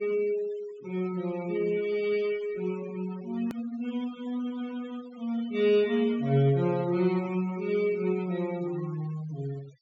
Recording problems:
treble cut off; nothing above 8 kHz
noise reduction artefacts; signal-to-artefact ratio 19 dB
hard cut with a click; at 3.5 s

